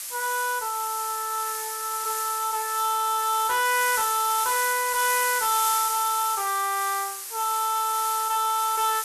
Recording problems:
distorted audio; soft clipping, signal-to-distortion ratio 11 dB
background hiss; slope +4 dB per octave, SNR 4 dB

